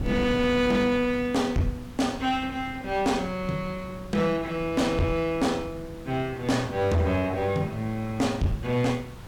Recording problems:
distortion; hard clipping, signal-to-distortion ratio 12 dB
hiss; SNR 23 dB
wind on the microphone; below 220 Hz, SNR 15 dB

